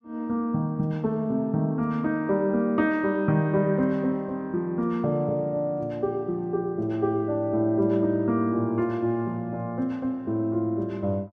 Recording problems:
none

